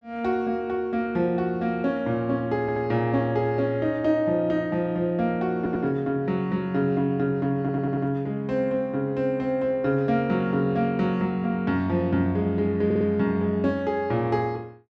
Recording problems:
audio stuttering; 4 times, first at 2.5 s

